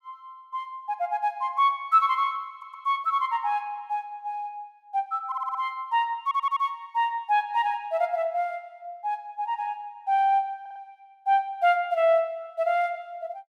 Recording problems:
stutter; 4 times, first at 2.5 s

